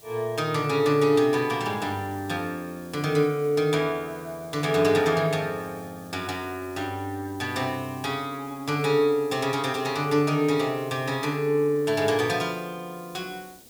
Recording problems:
hiss; SNR 23 dB

